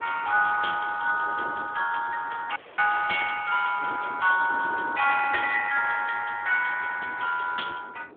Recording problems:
telephone audio; 390 Hz to 2.7 kHz, Speex
wind on the microphone; below 600 Hz, SNR 19 dB
audio cutting out; at 2.5 s

